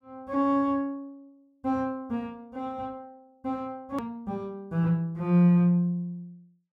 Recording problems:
edit click; at 4 s

